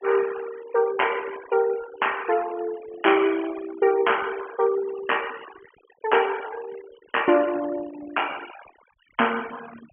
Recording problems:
low-pass filter; nothing above 3.1 kHz
noise reduction artefacts; signal-to-artefact ratio 16 dB

